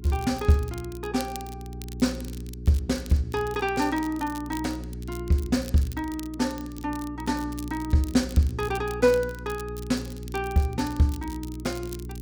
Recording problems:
hum; 60 Hz, harmonics up to 420 Hz, SNR 11 dB
crackle; vinyl, SNR 19 dB

